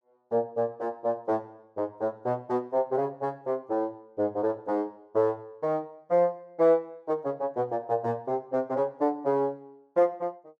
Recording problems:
none

